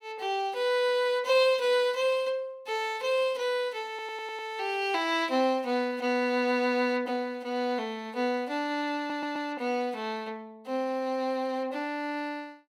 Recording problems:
audio stuttering; at 4 s and at 9 s

